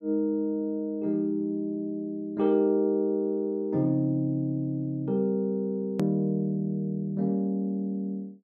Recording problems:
click at an edit; at 6 s

